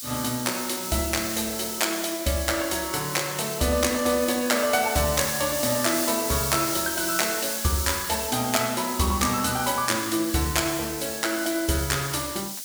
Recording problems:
hiss; SNR 5 dB

